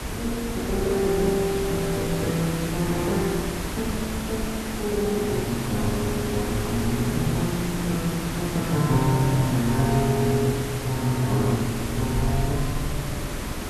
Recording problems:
hiss; slope -4 dB per octave, SNR 5 dB
wind noise; below 94 Hz, SNR 11 dB

